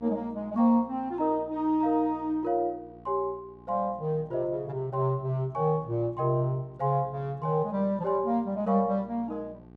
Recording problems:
hum; 60 Hz, harmonics up to 1.2 kHz, SNR 23 dB

